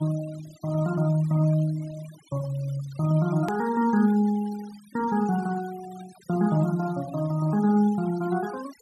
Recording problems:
noise reduction artefacts; signal-to-artefact ratio 21 dB
hard cut with a click; at 3.5 s

